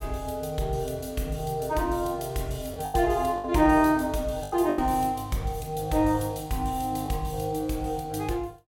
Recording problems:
packet loss; 4% of the sound replaced, filled with the last packet

